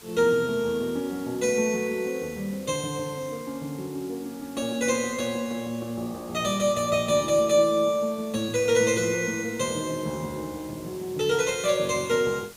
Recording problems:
hiss; slope -1 dB per octave, SNR 20 dB

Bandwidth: 15.5 kHz